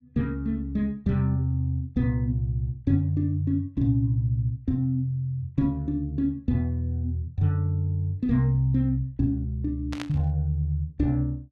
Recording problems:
burst of static; at 10 s; peak -5 dB vs average level

